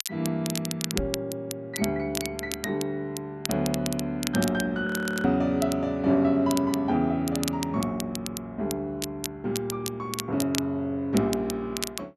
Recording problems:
crackling; vinyl, SNR 8 dB
microphone bump; at 1 s; peak -2 dB vs average level
frozen audio; at 5 s

